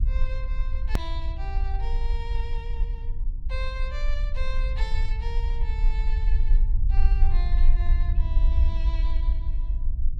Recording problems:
electrical hum; 60 Hz, harmonics up to 300 Hz, SNR 14 dB
rumble; below 48 Hz, strongest tone 20 Hz, SNR -13 dB
click at an edit; at 1 s

